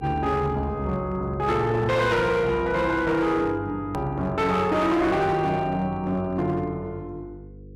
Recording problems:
distortion; hard clipping, signal-to-distortion ratio 11 dB
hum; 50 Hz, harmonics up to 500 Hz, SNR 19 dB
click at an edit; at 4 s

